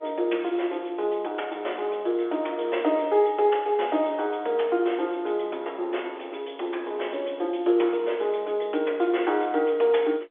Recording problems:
phone line; 300 Hz to 3.5 kHz, G.711

